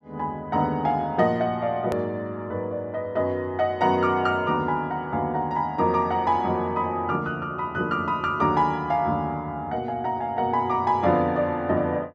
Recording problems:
hard cut with a click; at 2 s

